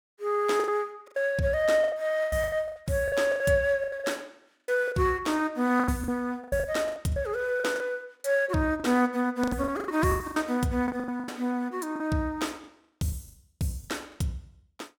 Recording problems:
packet loss; 15% of the sound replaced, filled with the last packet

